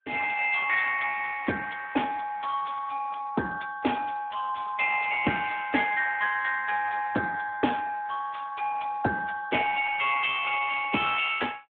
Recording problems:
telephone audio; 280 Hz to 3.1 kHz, Speex

